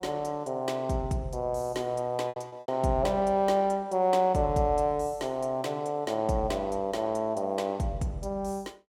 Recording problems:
packet loss; 2% of the sound replaced, filled with repeated pitch periods

